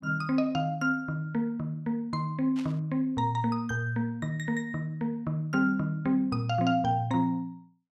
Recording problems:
burst of static; at 2.5 s; peak -11 dB vs average level

